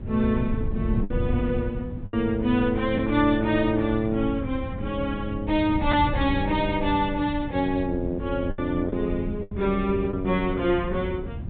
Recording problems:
treble cut off; nothing above 4 kHz
wind on the microphone; below 140 Hz, SNR 8 dB
packet loss; 3% of the sound replaced, filled with the last packet

